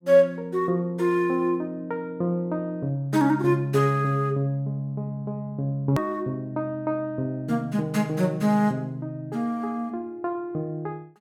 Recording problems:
edit click; at 6 s

